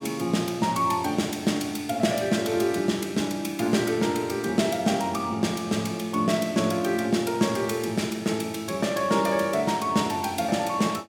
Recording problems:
none

